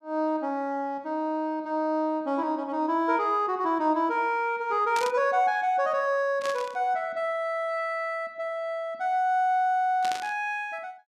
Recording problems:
burst of static; at 5 s, at 6.5 s and at 10 s; peak -5 dB vs average level

